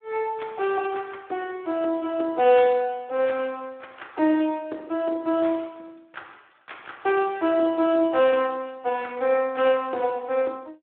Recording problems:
phone line; 260 Hz to 3.6 kHz, Speex

